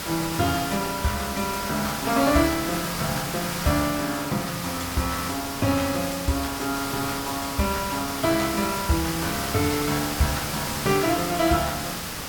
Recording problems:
background hiss; slope -2 dB per octave, SNR 4 dB

